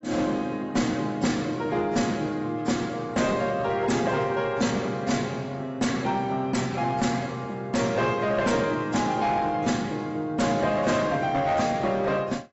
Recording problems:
lossy codec; AAC, log-spectral distance 3 dB, nothing above 7.8 kHz
distortion; hard clipping, uneven, signal-to-distortion ratio 11 dB

